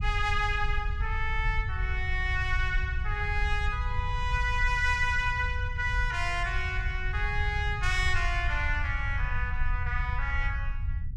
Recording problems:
low-frequency rumble; below 72 Hz, SNR 3 dB

